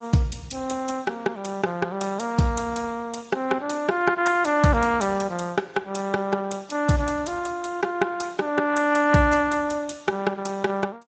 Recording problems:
lossy compression; AAC, then Speex, log-spectral distance 5 dB, nothing above 7.8 kHz

